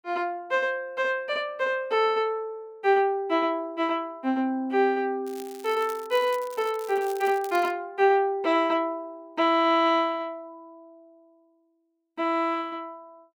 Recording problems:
crackle; from 5.5 to 7.5 s; loose cable, SNR 20 dB

